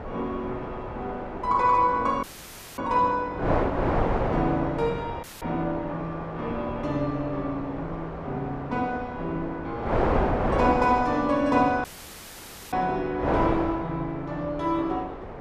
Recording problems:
wind noise; below 840 Hz, SNR 4 dB
audio cutting out; at 2 s for 0.5 s, at 5 s and at 12 s for 1 s

